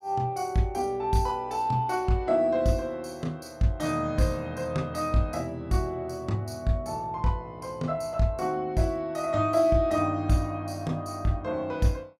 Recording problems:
none

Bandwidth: 16.5 kHz